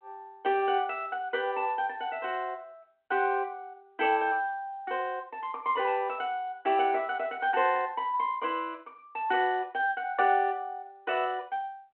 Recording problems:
phone line; 280 Hz to 3.1 kHz, G.726

